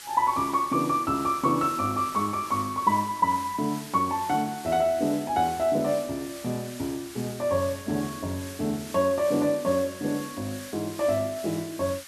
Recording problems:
hiss; SNR 15 dB

